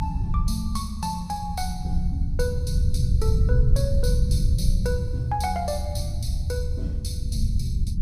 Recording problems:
rumble; below 88 Hz, SNR -5 dB

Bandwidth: 15 kHz